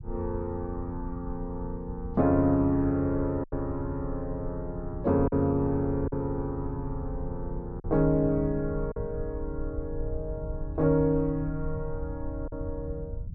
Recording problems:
rumble; below 88 Hz, SNR 10 dB
packet loss; 2% of the sound replaced, filled with silence

